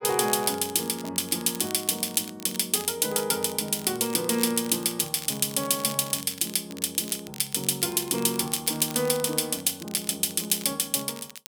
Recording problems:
crackling; vinyl, SNR 16 dB

